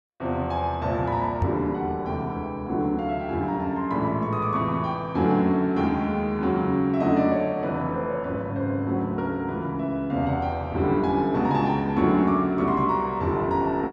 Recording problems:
microphone thump; at 1.5 s; peak +3 dB vs average level

